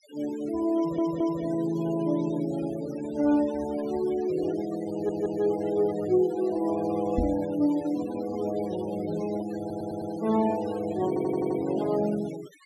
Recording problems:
denoising artefacts; signal-to-artefact ratio 16 dB
audio stuttering; 4 times, first at 1 s
knock on the microphone; at 7 s; peak +3 dB vs average level

